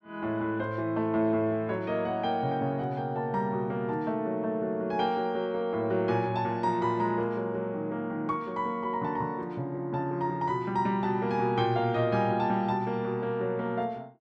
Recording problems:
none

